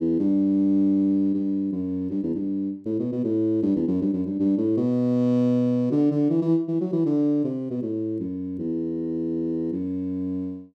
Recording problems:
none

